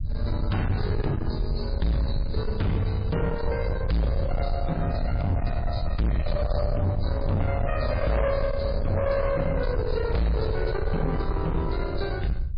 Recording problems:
codec artefacts; MP3, log-spectral distance 2 dB, nothing above 4.8 kHz
distorted audio; soft clipping, signal-to-distortion ratio 7 dB
low-frequency rumble; below 100 Hz, SNR 2 dB

